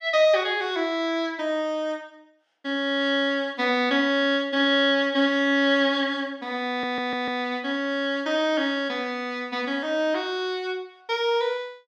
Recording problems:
stutter; at 6.5 s

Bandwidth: 15.5 kHz